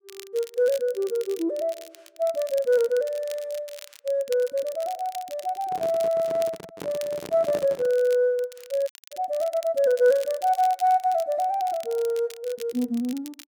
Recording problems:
crackle; vinyl, SNR 20 dB
microphone handling noise; from 5.5 to 8 s; peak -7 dB vs average level
audio cutting out; at 9 s

